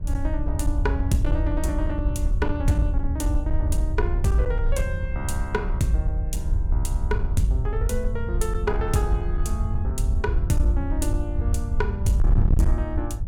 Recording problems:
distortion; hard clipping, signal-to-distortion ratio 8 dB
wind noise; below 76 Hz, SNR -2 dB

